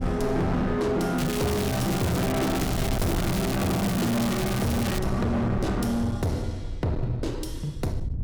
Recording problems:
distortion; hard clipping, uneven, signal-to-distortion ratio 8 dB
low-frequency rumble; below 120 Hz, SNR 9 dB
crackling; from 1 to 5 s; loose cable, SNR 7 dB

